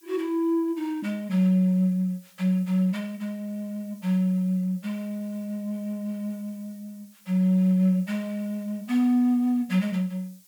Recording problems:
background hiss; SNR 29 dB

